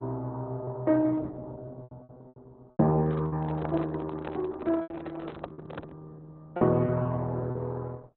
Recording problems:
lossy compression; Opus, log-spectral distance 2 dB
packet loss; 8% of the sound replaced, filled with repeated pitch periods
handling noise; from 3 to 6 s; peak -4 dB vs average level

